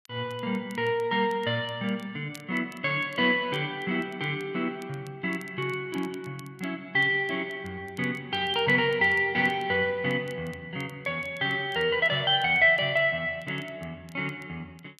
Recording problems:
crackle; vinyl, SNR 29 dB

